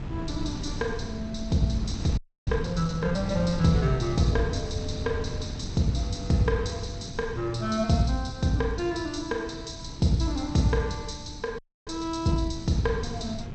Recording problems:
codec artefacts; G.722, log-spectral distance 5 dB, nothing above 8 kHz
wind noise; below 200 Hz, SNR 9 dB
frozen audio; at 2 s and at 12 s

